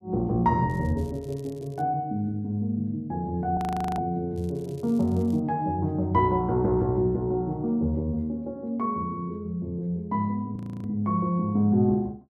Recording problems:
crackling; from 0.5 to 2 s and from 4.5 to 5.5 s; loose cable, SNR 29 dB
frozen audio; at 3.5 s and at 11 s

